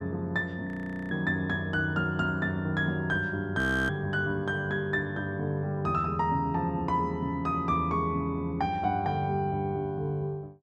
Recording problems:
frozen audio; at 0.5 s and at 3.5 s

